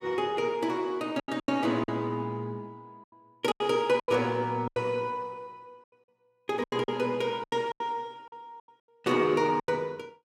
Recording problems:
packet loss; 11% of the sound replaced, filled with silence

